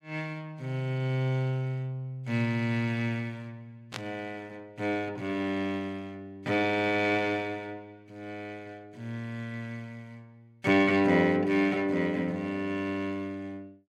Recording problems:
static burst; at 4 s; peak -2 dB vs average level

